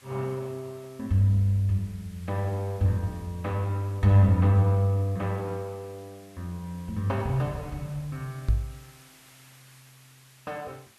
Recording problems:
background hiss; slope 0 dB per octave, SNR 27 dB
microphone bump; at 8.5 s; peak +5 dB vs average level

